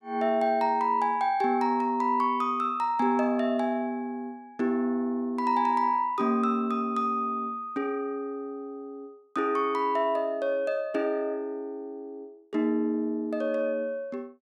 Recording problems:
none

